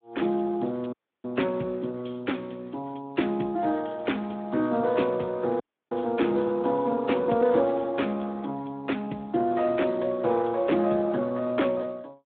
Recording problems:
phone line; 150 Hz to 3.7 kHz, Speex
dropout; at 1 s and at 5.5 s

